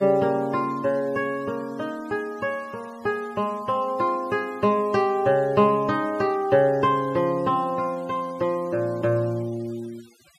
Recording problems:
noise reduction artefacts; signal-to-artefact ratio 26 dB

